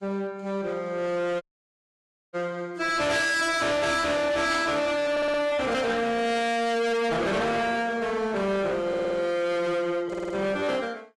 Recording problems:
lossy compression; AAC, log-spectral distance 3 dB, nothing above 11.3 kHz
distortion; hard clipping, uneven, signal-to-distortion ratio 7 dB
dropout; at 1.5 s for 1 s
burst of static; at 4.5 s; peak -4 dB vs average level
stutter; at 5 s, at 9 s and at 10 s

